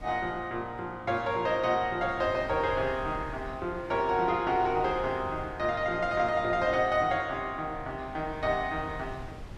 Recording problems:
wind on the microphone; below 190 Hz, SNR 17 dB

